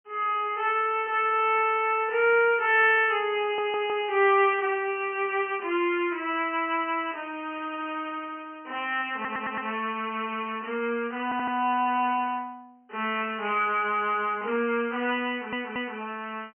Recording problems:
telephone audio; 280 Hz to 3.1 kHz, G.726
audio stuttering; 4 times, first at 3.5 s

